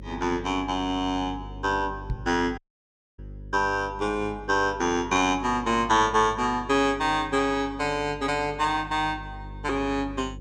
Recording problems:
electrical hum; 50 Hz, harmonics up to 550 Hz, SNR 16 dB
microphone thump; at 2 s; peak -2 dB vs average level
audio cutting out; at 2.5 s for 0.5 s

